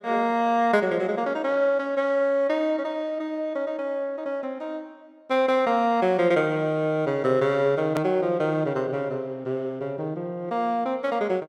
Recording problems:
hard cut with a click; at 8 s

